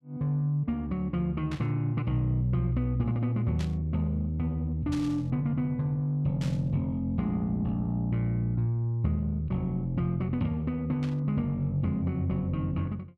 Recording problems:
burst of static; 5 times, first at 1.5 s; peak -9 dB vs average level

